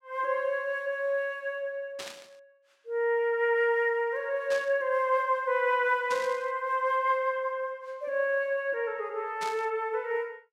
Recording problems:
burst of static; 4 times, first at 2 s; peak -7 dB vs average level

